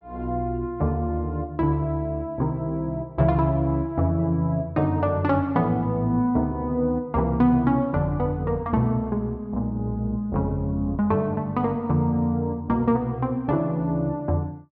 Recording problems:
none

